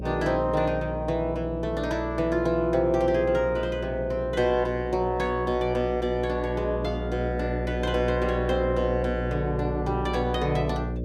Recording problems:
hum; 60 Hz, harmonics up to 600 Hz, SNR 7 dB

